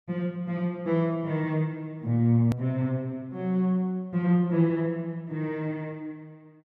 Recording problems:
click at an edit; at 2.5 s

